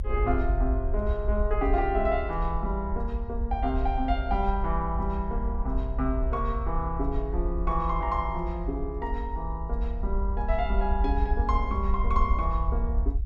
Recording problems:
low-frequency rumble; below 60 Hz, SNR 0 dB

